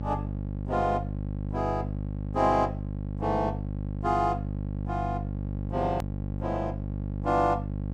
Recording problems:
hum; 50 Hz, harmonics up to 600 Hz, SNR 4 dB
hard cut with a click; at 6 s

